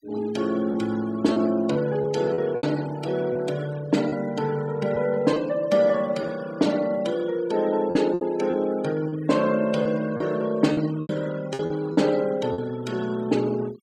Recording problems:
denoising artefacts; signal-to-artefact ratio 19 dB
packet loss; 6% of the sound replaced, filled with repeated pitch periods

